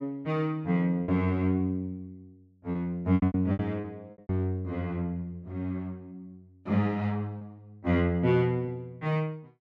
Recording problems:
lost packets; 6% of the sound replaced, filled with repeated pitch periods

